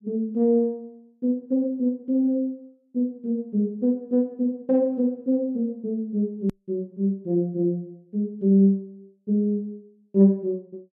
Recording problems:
click at an edit; at 6.5 s

